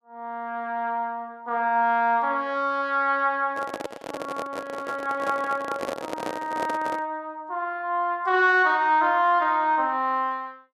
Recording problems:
handling noise; from 3.5 to 7 s; peak -3 dB vs average level

